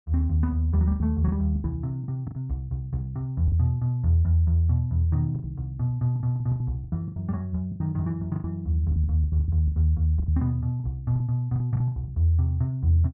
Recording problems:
packet loss; 12% of the sound replaced, filled with the last packet

